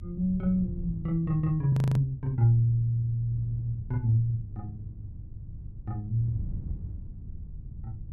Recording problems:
low-frequency rumble; below 94 Hz, SNR 18 dB
wind noise; below 140 Hz, SNR 15 dB
frozen audio; at 1.5 s

